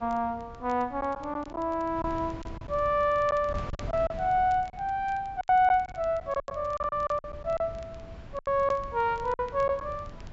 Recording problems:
low-pass filter; nothing above 8 kHz
wind noise; below 210 Hz, SNR 16 dB
crackling; vinyl, SNR 29 dB
lost packets; 9% of the sound replaced, filled with silence

